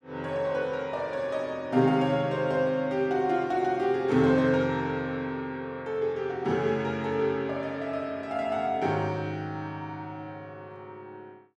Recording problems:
none

